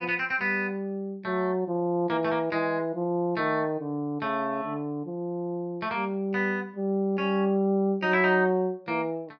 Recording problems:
none

